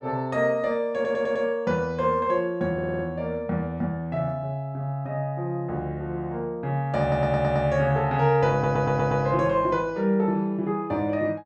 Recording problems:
stutter; 4 times, first at 1 s

